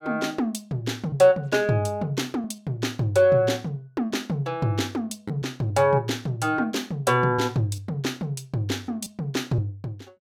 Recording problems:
lost packets; 3% of the sound replaced, filled with repeated pitch periods

